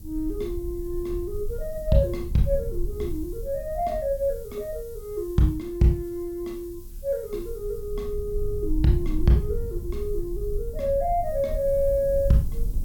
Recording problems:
hiss; SNR 24 dB
low-frequency rumble; below 58 Hz, SNR 8 dB

